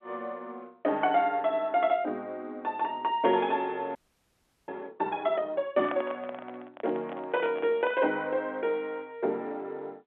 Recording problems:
telephone audio; 260 Hz to 3.5 kHz, G.711
audio freezing; at 4 s for 0.5 s
microphone handling noise; from 5.5 to 8 s; peak -2 dB vs average level

